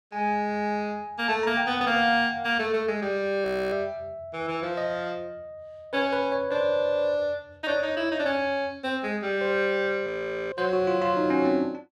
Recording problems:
audio freezing; at 3.5 s and at 10 s

